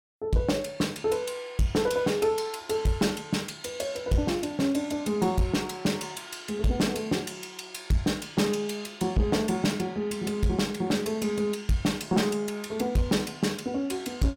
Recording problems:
distorted audio; soft clipping, signal-to-distortion ratio 11 dB

